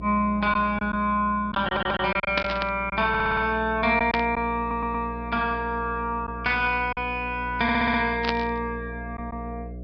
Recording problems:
low-pass filter; nothing above 5.5 kHz
hum; 60 Hz, harmonics up to 720 Hz, SNR 14 dB
packet loss; 3% of the sound replaced, filled with silence
audio stuttering; 4 times, first at 1.5 s
burst of static; at 2.5 s, at 4 s and at 8 s; peak +3 dB vs average level

